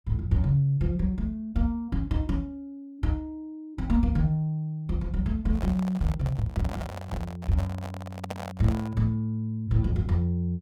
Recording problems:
handling noise; from 5.5 to 9 s; peak -3 dB vs average level

